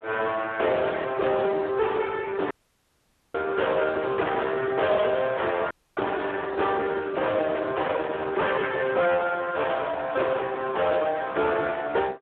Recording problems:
telephone audio; 320 Hz to 3.7 kHz, Speex
distorted audio; soft clipping, signal-to-distortion ratio 7 dB
dropout; at 2.5 s for 1 s and at 5.5 s

